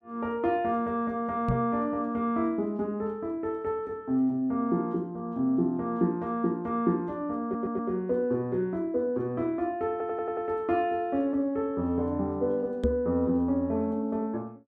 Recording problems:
microphone bump; at 1.5 s and at 13 s; peak +4 dB vs average level
audio stuttering; at 7.5 s and at 10 s

